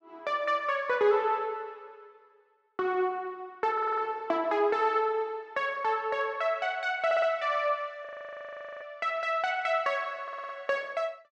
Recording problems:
audio stuttering; at 3.5 s, at 7 s and at 10 s
frozen audio; at 8 s for 1 s

